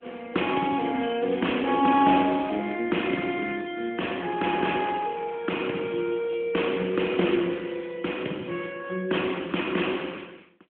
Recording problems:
phone line; 190 Hz to 3.4 kHz, AMR-NB

